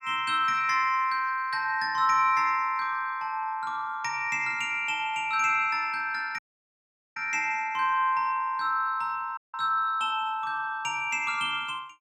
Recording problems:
dropout; at 6.5 s for 1 s and at 9.5 s

